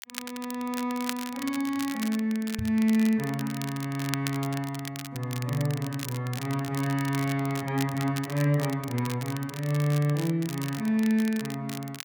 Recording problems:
crackle; vinyl, SNR 12 dB
knock on the microphone; at 2.5 s; peak -2 dB vs average level

